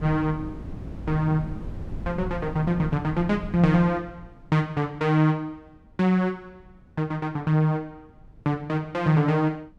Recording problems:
wind on the microphone; below 180 Hz, SNR 12 dB

